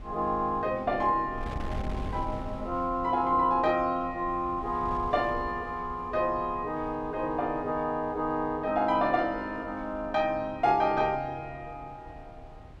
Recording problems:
wind on the microphone; below 170 Hz, SNR 16 dB

